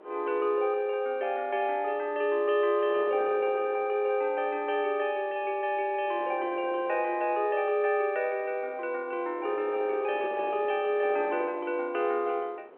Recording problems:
telephone audio; 320 Hz to 3.4 kHz, G.711
wind on the microphone; below 740 Hz, SNR 17 dB

